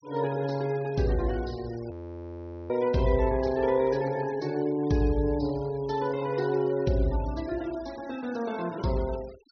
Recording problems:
treble cut off; nothing above 6.2 kHz
noise reduction artefacts; signal-to-artefact ratio 21 dB
audio freezing; at 2 s for 1 s

